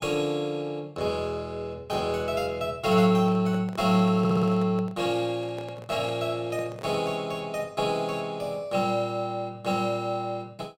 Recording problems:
microphone handling noise; from 3 to 7.5 s; peak -10 dB vs average level
audio stuttering; at 4 s

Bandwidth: 16 kHz